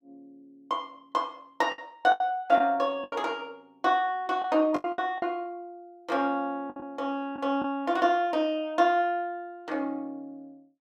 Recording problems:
lost packets; 6% of the sound replaced, filled with the last packet

